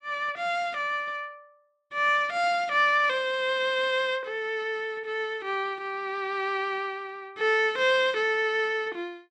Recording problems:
none

